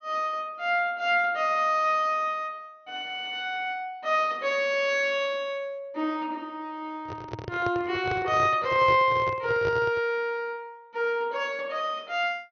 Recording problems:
treble cut off; nothing above 6.3 kHz
handling noise; from 7 to 10 s; peak -2 dB vs average level

